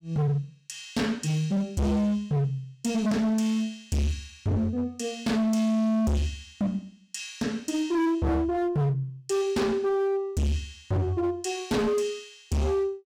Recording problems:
distortion; hard clipping, signal-to-distortion ratio 6 dB

